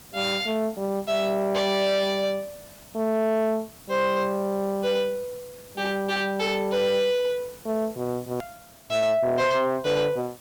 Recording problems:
distorted audio; soft clipping, signal-to-distortion ratio 12 dB
hiss; slope -3 dB per octave, SNR 22 dB
edit click; at 8.5 s

